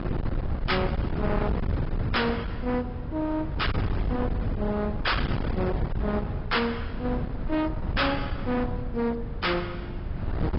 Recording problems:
treble missing; nothing above 5.3 kHz
lossy codec; AAC, log-spectral distance 2 dB
distorted audio; hard clipping, signal-to-distortion ratio 8 dB
hum; 50 Hz, harmonics up to 950 Hz, SNR 19 dB
wind on the microphone; below 220 Hz, SNR 2 dB

